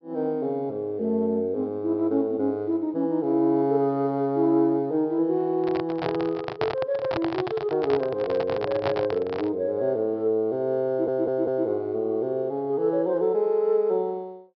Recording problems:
treble cut off; nothing above 5.5 kHz
handling noise; from 5.5 to 9.5 s; peak +1 dB vs average level
audio stuttering; at 11 s

